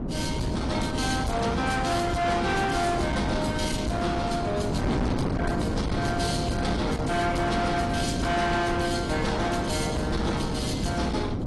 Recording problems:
lossy codec; AAC, log-spectral distance 4 dB, nothing above 11.3 kHz
distorted audio; soft clipping, signal-to-distortion ratio 7 dB
wind on the microphone; below 460 Hz, SNR 3 dB

